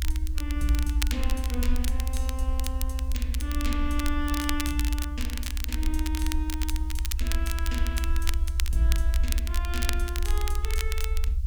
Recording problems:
background hiss; SNR 25 dB
rumble; below 66 Hz, SNR -3 dB
crackle; vinyl, SNR 4 dB

